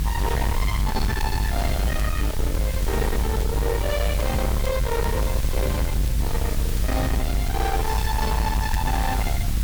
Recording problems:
distortion; soft clipping, signal-to-distortion ratio 7 dB
background hiss; slope 0 dB per octave, SNR 9 dB
rumble; below 110 Hz, strongest tone 52 Hz, SNR -1 dB
wind on the microphone; below 190 Hz, SNR 9 dB
crackle; vinyl, SNR 20 dB

